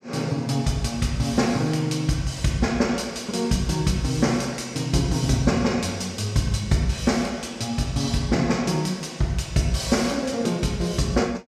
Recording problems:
none

